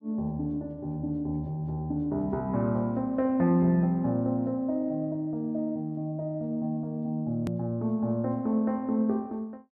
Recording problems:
click at an edit; at 7.5 s

